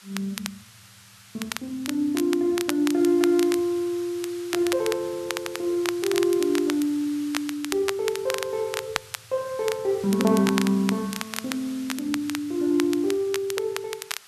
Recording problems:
hiss; SNR 19 dB
crackle; vinyl, SNR 9 dB

